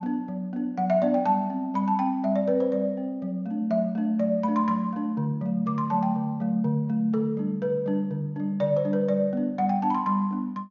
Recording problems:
treble cut off; nothing above 6.8 kHz

